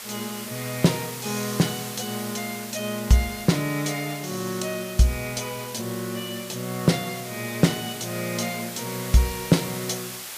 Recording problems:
background hiss; slope +1 dB per octave, SNR 9 dB

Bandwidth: 15 kHz